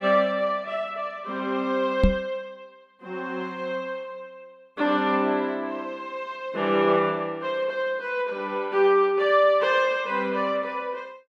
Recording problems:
knock on the microphone; at 2 s; peak +8 dB vs average level

